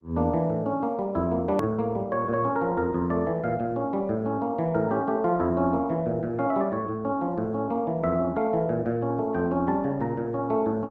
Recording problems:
lossy compression; Opus, then Opus, log-spectral distance 2 dB, nothing above 13.1 kHz
click at an edit; at 1.5 s

